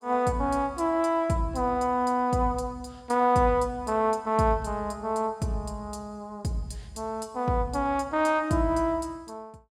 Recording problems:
none

